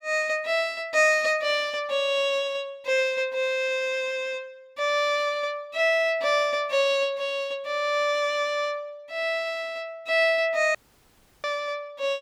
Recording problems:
dropout; at 11 s for 0.5 s

